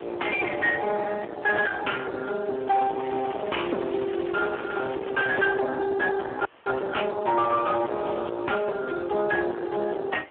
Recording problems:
phone line; 280 Hz to 2.6 kHz, Speex
distorted audio; soft clipping, signal-to-distortion ratio 8 dB
hiss; SNR 23 dB
crackling; from 2.5 to 5.5 s; loose cable, SNR 19 dB
frozen audio; at 6.5 s

